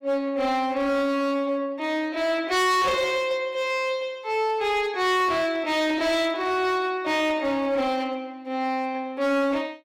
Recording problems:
distortion; hard clipping, uneven, signal-to-distortion ratio 8 dB

